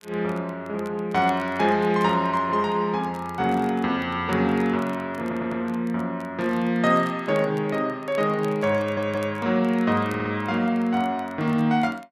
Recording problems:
crackle; vinyl, SNR 28 dB
audio stuttering; at 5 s, at 9 s and at 10 s

